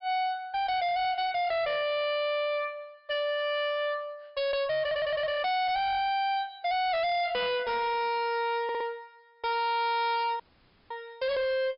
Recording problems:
low-pass filter; nothing above 5.5 kHz
distorted audio; hard clipping, signal-to-distortion ratio 6 dB
stutter; at 5 s and at 8.5 s
dropout; at 10 s for 0.5 s

